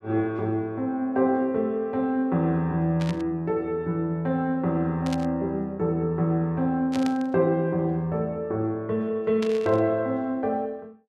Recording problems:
static burst; 4 times, first at 3 s; peak -7 dB vs average level

